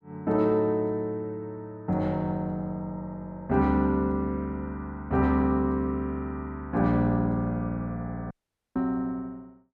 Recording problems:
dropout; at 8.5 s
knock on the microphone; at 9 s; peak -26 dB vs average level

